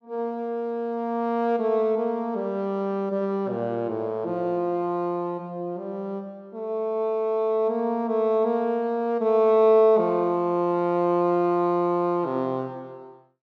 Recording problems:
none

